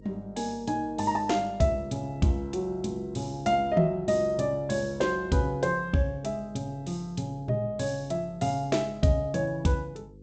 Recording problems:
lossy codec; G.722, log-spectral distance 3 dB, nothing above 8 kHz
hum; 50 Hz, harmonics up to 500 Hz, SNR 22 dB

